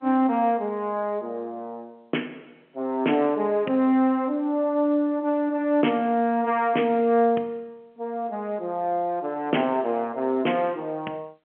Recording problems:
telephone audio; 190 Hz to 3.3 kHz, G.711

